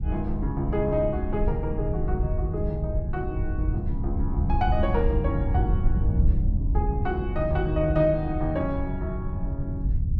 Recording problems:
wind noise; below 90 Hz, SNR -1 dB

